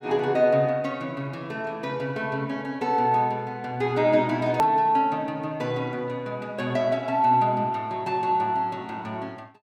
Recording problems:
click at an edit; at 4.5 s

